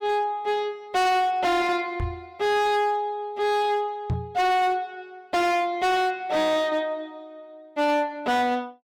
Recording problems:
distortion; hard clipping, signal-to-distortion ratio 8 dB
knock on the microphone; at 2 s and at 4 s; peak +1 dB vs average level

